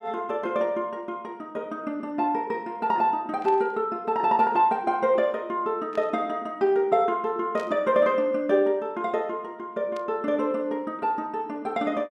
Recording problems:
burst of static; 4 times, first at 3.5 s; peak -14 dB vs average level

